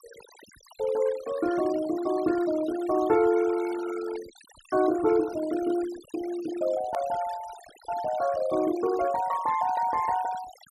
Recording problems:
noise reduction artefacts; signal-to-artefact ratio 17 dB
hard cut with a click; at 7 s

